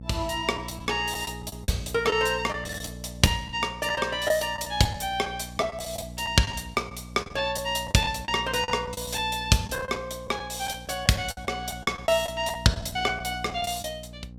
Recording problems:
mains hum; 60 Hz, harmonics up to 540 Hz, SNR 15 dB
lost packets; 9% of the sound replaced, filled with the last packet

